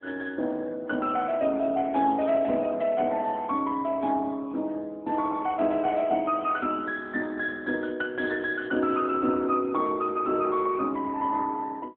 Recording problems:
phone line; 220 Hz to 3.6 kHz, AMR-NB

